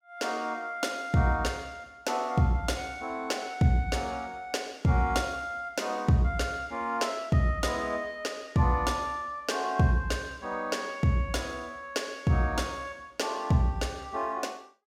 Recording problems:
none

